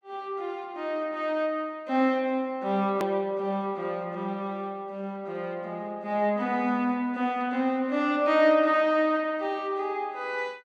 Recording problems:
click at an edit; at 3 s

